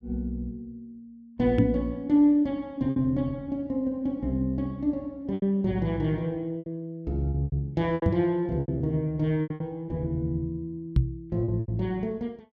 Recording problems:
packet loss; 7% of the sound replaced, filled with repeated pitch periods
knock on the microphone; at 1.5 s, at 8 s and at 11 s; peak +9 dB vs average level

